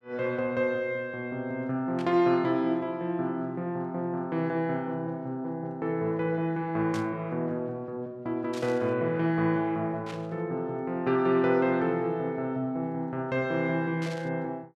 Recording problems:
static burst; 5 times, first at 2 s; peak -9 dB vs average level

